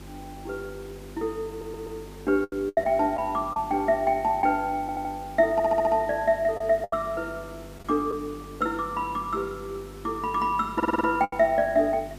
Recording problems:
hum; 50 Hz, harmonics up to 400 Hz, SNR 19 dB
hiss; slope -4 dB per octave, SNR 23 dB
lost packets; 4% of the sound replaced, filled with the last packet
audio stuttering; 4 times, first at 1.5 s

